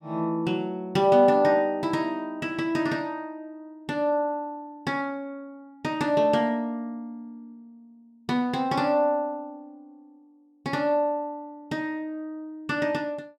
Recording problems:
none

